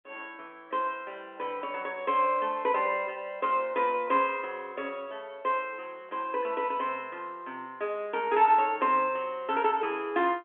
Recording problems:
telephone audio; 220 Hz to 3.4 kHz, G.711

